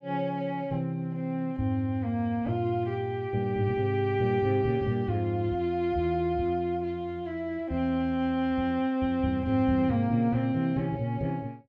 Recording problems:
none

